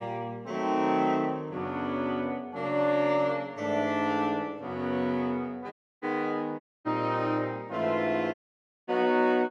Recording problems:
dropout; at 5.5 s, at 6.5 s and at 8.5 s for 0.5 s

